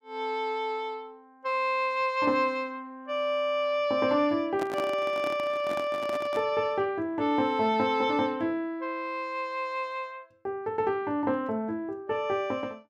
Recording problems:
microphone handling noise; from 4.5 to 6.5 s; peak -3 dB vs average level

